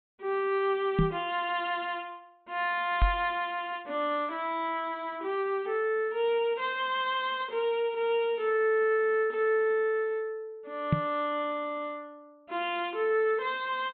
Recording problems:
low-pass filter; nothing above 4 kHz
microphone thump; at 1 s, at 3 s and at 11 s; peak +7 dB vs average level

